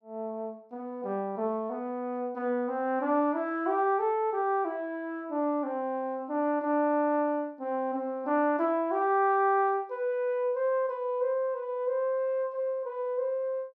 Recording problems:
none

